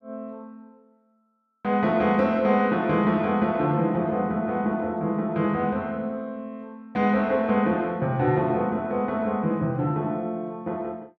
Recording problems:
none

